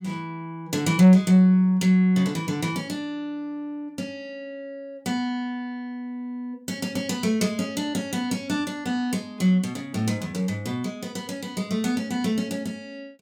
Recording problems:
distorted audio; soft clipping, signal-to-distortion ratio 12 dB

